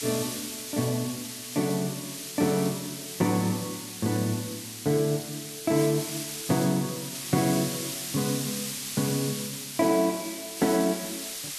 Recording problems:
hiss; slope +3 dB per octave, SNR 6 dB

